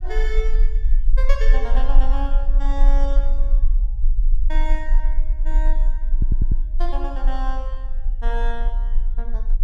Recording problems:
rumble; below 34 Hz, strongest tone 20 Hz, SNR -10 dB
audio stuttering; at 6 s

